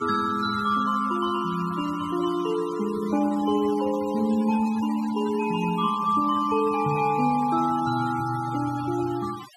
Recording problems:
denoising artefacts; signal-to-artefact ratio 17 dB

